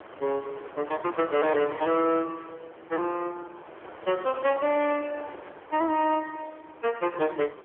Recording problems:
telephone audio; 260 Hz to 2.6 kHz, AMR-NB
distorted audio; soft clipping, signal-to-distortion ratio 11 dB
wind on the microphone; below 1.3 kHz, SNR 18 dB

